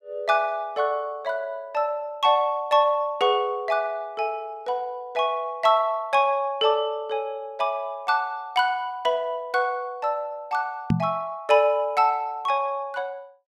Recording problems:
microphone thump; at 11 s; peak +6 dB vs average level

